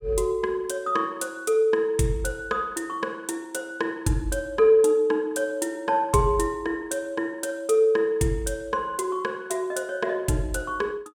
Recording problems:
none

